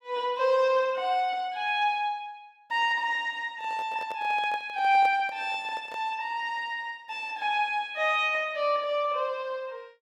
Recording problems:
handling noise; from 3.5 to 6 s; peak -9 dB vs average level

